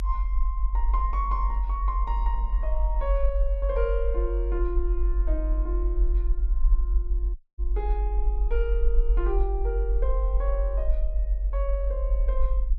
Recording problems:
low-frequency rumble; below 48 Hz, strongest tone 46 Hz, SNR -6 dB
dropout; at 7.5 s

